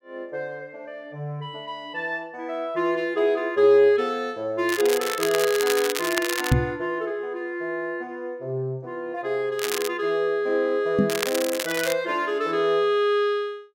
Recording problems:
crackle; from 4.5 to 6.5 s, at 9.5 s and at 11 s; loose cable, SNR 5 dB
knock on the microphone; at 6.5 s and at 11 s; peak +8 dB vs average level

